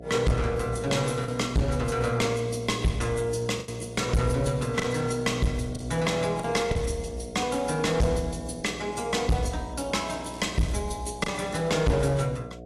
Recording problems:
codec artefacts; AAC, log-spectral distance 4 dB, nothing above 11 kHz
distorted audio; hard clipping, uneven, signal-to-distortion ratio 6 dB
hum; 60 Hz, harmonics up to 720 Hz, SNR 15 dB
lost packets; 3% of the sound replaced, filled with the last packet
crackling; at 10 s; loose cable, SNR 24 dB

